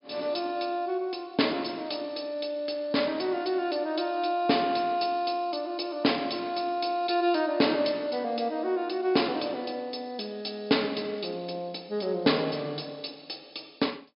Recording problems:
treble cut off; nothing above 5.5 kHz

